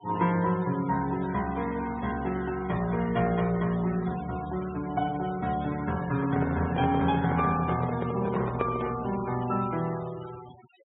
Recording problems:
low-pass filter; nothing above 4 kHz
noise reduction artefacts; signal-to-artefact ratio 17 dB
microphone handling noise; from 6 to 9 s; peak +1 dB vs average level

